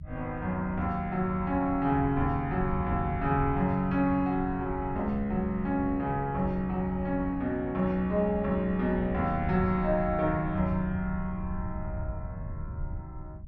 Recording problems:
rumble; below 110 Hz, SNR 10 dB

